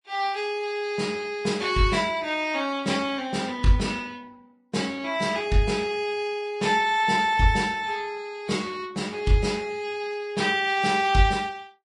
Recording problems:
lossy codec; Vorbis, log-spectral distance 3 dB, nothing above 10.1 kHz

